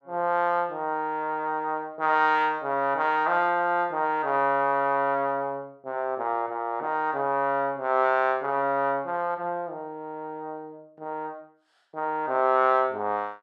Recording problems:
none

